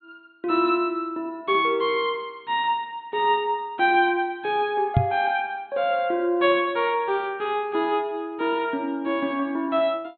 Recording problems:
treble cut off; nothing above 4.3 kHz
knock on the microphone; at 5 s; peak +7 dB vs average level

